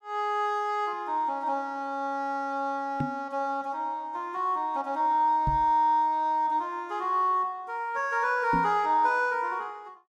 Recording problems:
microphone bump; at 3 s, at 5.5 s and at 8.5 s; peak +1 dB vs average level

